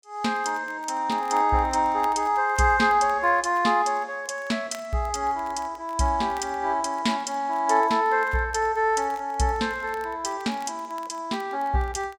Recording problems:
crackle; vinyl, SNR 28 dB

